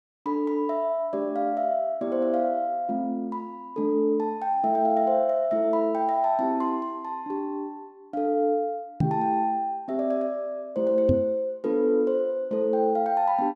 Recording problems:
microphone bump; at 9 s and at 11 s; peak +5 dB vs average level

